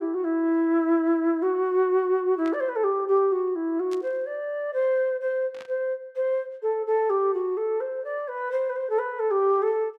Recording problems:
static burst; at 2.5 s, at 4 s and at 5.5 s; peak -14 dB vs average level

